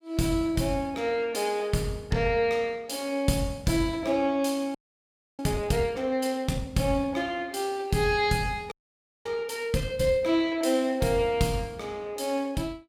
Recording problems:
frozen audio; at 5 s for 0.5 s and at 8.5 s for 0.5 s

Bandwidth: 17 kHz